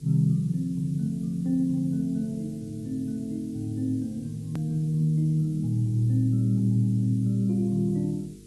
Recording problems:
lossy compression; AAC, log-spectral distance 2 dB, nothing above 13.1 kHz
hum; 50 Hz, harmonics up to 450 Hz, SNR 25 dB
hiss; slope +6 dB per octave, SNR 29 dB
click at an edit; at 4.5 s

